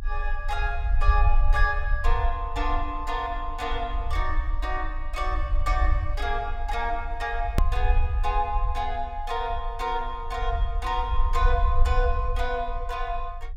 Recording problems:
rumble; below 54 Hz, strongest tone 22 Hz, SNR 0 dB
click at an edit; at 7.5 s

